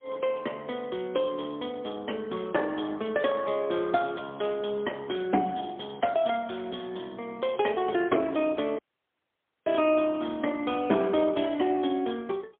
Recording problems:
phone line; 240 Hz to 3.4 kHz, AMR-NB, then MP3
dropout; at 9 s for 1 s

